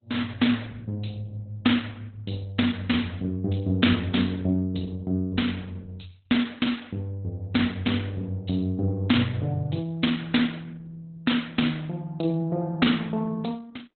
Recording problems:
codec artefacts; Opus, log-spectral distance 4 dB, nothing above 4 kHz

